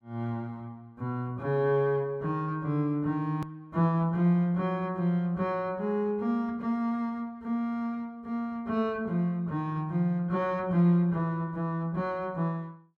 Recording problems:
click at an edit; at 3.5 s

